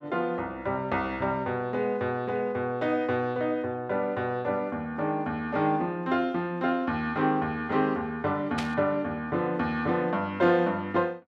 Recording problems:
burst of static; at 8.5 s; peak -2 dB vs average level

